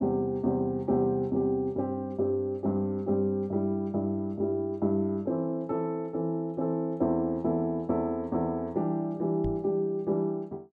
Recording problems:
microphone thump; at 9.5 s; peak -3 dB vs average level

